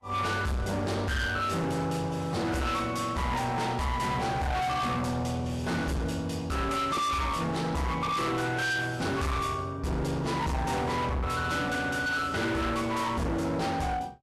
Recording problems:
codec artefacts; Vorbis, log-spectral distance 2 dB, nothing above 13.1 kHz
distorted audio; hard clipping, signal-to-distortion ratio 6 dB

